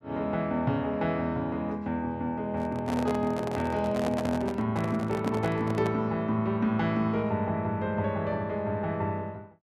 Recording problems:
microphone handling noise; from 2.5 to 6 s; peak 0 dB vs average level

